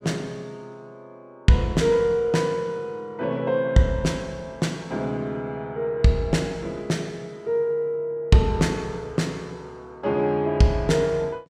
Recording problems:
none

